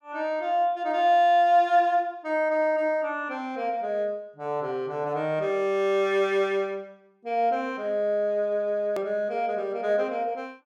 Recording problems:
edit click; at 9 s

